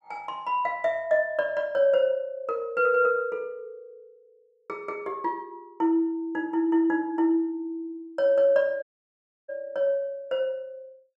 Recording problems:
audio cutting out; at 9 s for 0.5 s

